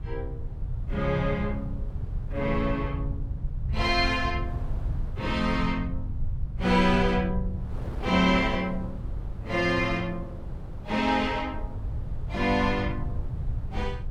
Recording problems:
low-frequency rumble; below 100 Hz, SNR 7 dB
wind on the microphone; below 500 Hz, SNR 19 dB

